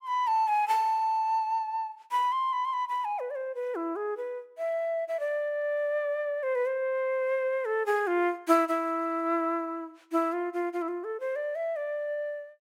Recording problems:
none

